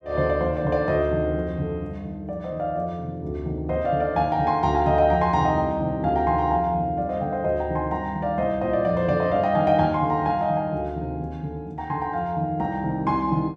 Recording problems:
none

